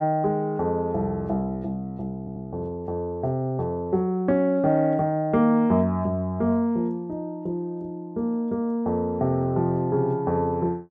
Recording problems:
stutter; at 2 s

